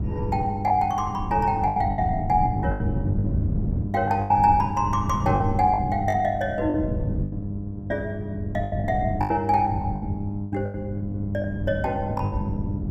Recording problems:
hum; 50 Hz, harmonics up to 700 Hz, SNR 7 dB
wind on the microphone; below 180 Hz, SNR 6 dB
packet loss; 11% of the sound replaced, filled with the last packet

